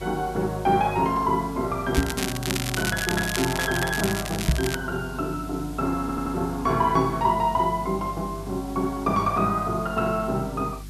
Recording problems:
hum; 50 Hz, harmonics up to 350 Hz, SNR 15 dB
background hiss; SNR 21 dB
crackle; from 2 to 4.5 s; loose cable, SNR 5 dB
knock on the microphone; at 2 s and at 4.5 s; peak +7 dB vs average level
stutter; at 6 s

